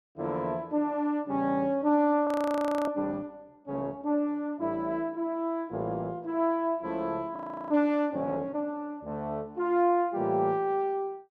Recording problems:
frozen audio; at 2.5 s for 0.5 s and at 7.5 s

